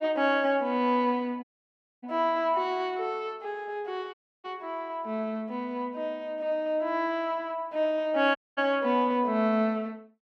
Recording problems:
audio cutting out; at 1.5 s for 0.5 s, at 4 s and at 8.5 s

